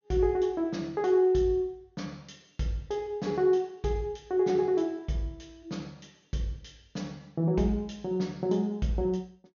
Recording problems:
treble missing; nothing above 6.6 kHz

